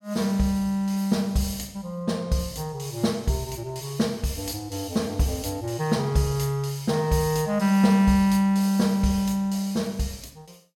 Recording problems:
none

